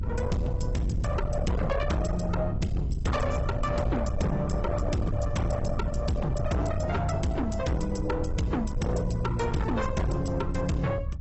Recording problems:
lossy compression; AAC, log-spectral distance 3 dB, nothing above 8 kHz
distorted audio; soft clipping, signal-to-distortion ratio 7 dB
rumble; below 130 Hz, SNR 3 dB

